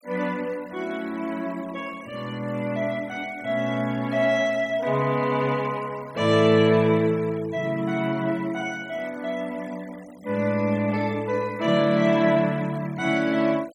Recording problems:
noise reduction artefacts; signal-to-artefact ratio 24 dB

